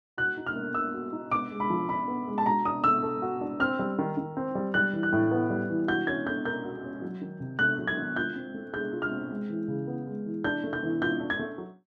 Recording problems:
none

